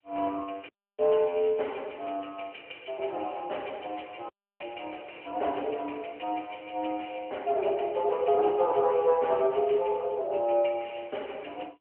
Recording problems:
phone line; 320 Hz to 3.1 kHz, AMR-NB
audio cutting out; at 0.5 s and at 4.5 s

